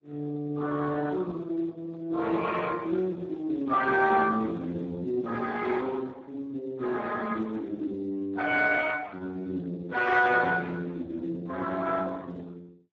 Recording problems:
lossy codec; Opus, then Speex, log-spectral distance 3 dB

